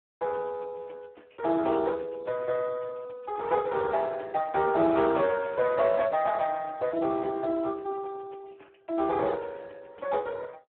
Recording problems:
phone line; 170 Hz to 2.8 kHz, Speex

